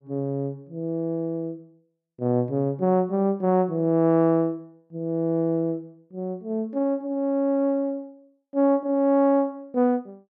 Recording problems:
none

